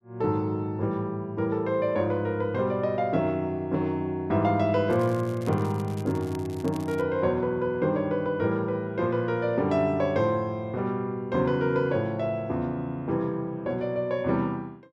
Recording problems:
crackling; from 5 to 7 s; loose cable, SNR 23 dB

